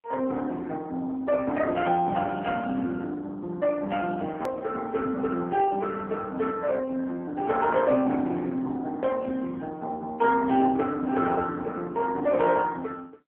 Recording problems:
telephone audio; 220 Hz to 3.6 kHz, AMR-NB
hard cut with a click; at 4.5 s

